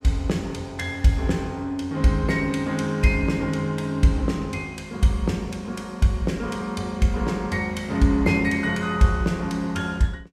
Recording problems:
none

